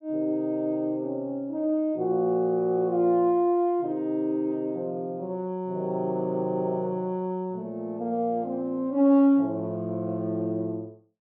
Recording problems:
none

